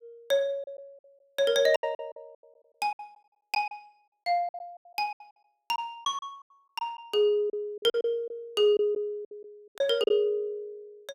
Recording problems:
lost packets; 11% of the sound replaced, filled with silence

